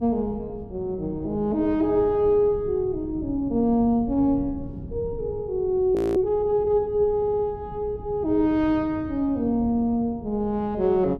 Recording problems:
wind noise; below 190 Hz, SNR 16 dB
frozen audio; at 6 s
audio stuttering; at 7 s

